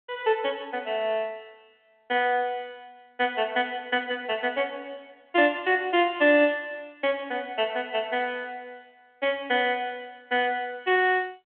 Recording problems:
phone line; 260 Hz to 3.4 kHz, G.726

